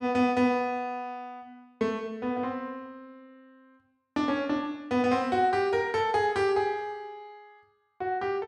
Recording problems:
none

